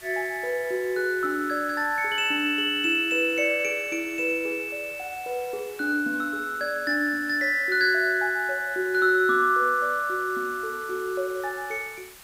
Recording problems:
background hiss; slope 0 dB per octave, SNR 21 dB

